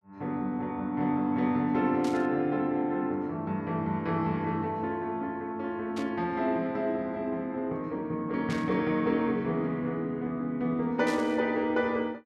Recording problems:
static burst; 4 times, first at 2 s; peak -7 dB vs average level

